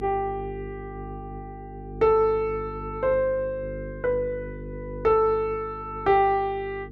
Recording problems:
hum; 50 Hz, harmonics up to 450 Hz, SNR 14 dB

